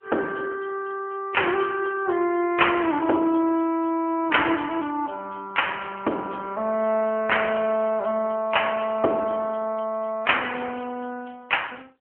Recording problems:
telephone audio; 260 Hz to 3.1 kHz, AMR-NB

